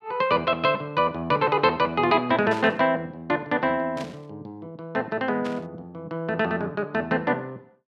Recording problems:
burst of static; at 2.5 s, at 4 s and at 5.5 s; peak -9 dB vs average level

